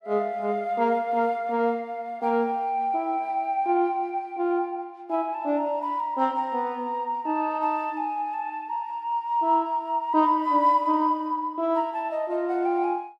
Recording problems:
none

